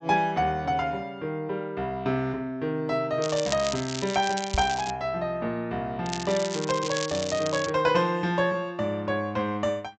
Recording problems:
low-pass filter; nothing above 8 kHz
crackle; from 3 to 5 s and from 6 to 7.5 s; loose cable, SNR 8 dB
knock on the microphone; at 4.5 s; peak +1 dB vs average level

